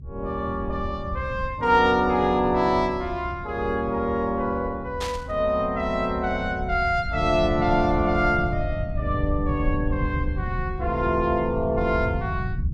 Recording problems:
rumble; below 120 Hz, SNR 8 dB
burst of static; at 5 s; peak -4 dB vs average level

